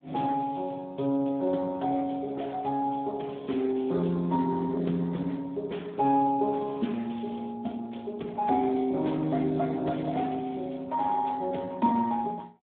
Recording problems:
telephone audio; 130 Hz to 3.6 kHz, Speex

